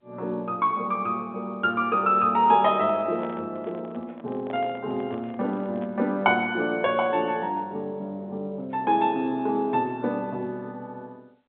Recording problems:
telephone audio; 150 Hz to 3.7 kHz, G.711
microphone handling noise; from 2.5 to 6 s; peak -8 dB vs average level

